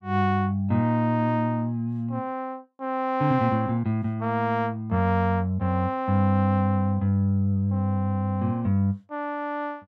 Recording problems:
none

